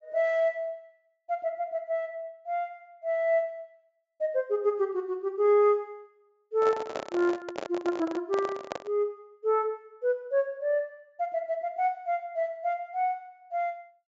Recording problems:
low-pass filter; nothing above 8 kHz
microphone handling noise; from 6.5 to 9 s; peak 0 dB vs average level

